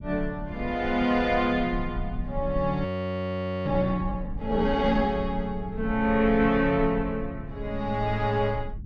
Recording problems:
rumble; below 94 Hz, SNR 11 dB
frozen audio; at 3 s for 1 s

